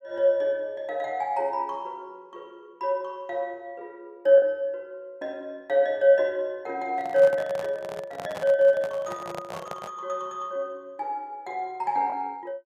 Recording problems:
lost packets; 0.5% of the sound replaced, filled with the last packet
handling noise; from 7 to 10 s; peak -6 dB vs average level

